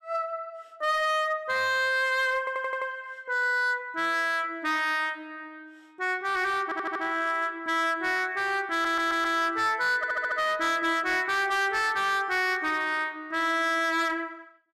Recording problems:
distorted audio; hard clipping, signal-to-distortion ratio 12 dB
audio stuttering; 4 times, first at 2.5 s

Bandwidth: 14.5 kHz